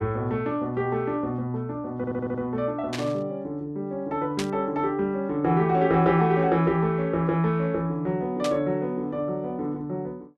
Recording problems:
stutter; at 2 s
static burst; at 3 s, at 4.5 s and at 8.5 s; peak -1 dB vs average level

